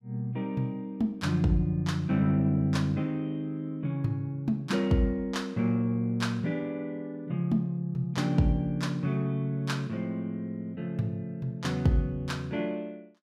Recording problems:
none

